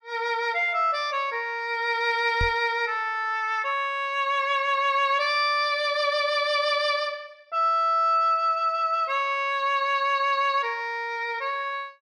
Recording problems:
knock on the microphone; at 2.5 s; peak -2 dB vs average level

